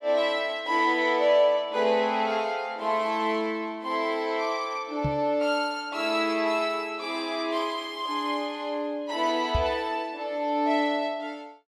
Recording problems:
microphone bump; at 5 s and at 9.5 s; peak +2 dB vs average level

